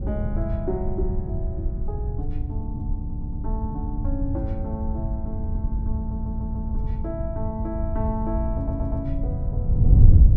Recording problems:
wind on the microphone; below 100 Hz, SNR -7 dB
stutter; at 3 s, at 6 s and at 8.5 s

